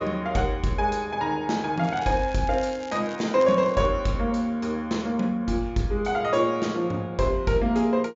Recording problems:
low-pass filter; nothing above 7.4 kHz
crackle; from 2 to 4 s; loose cable, SNR 22 dB

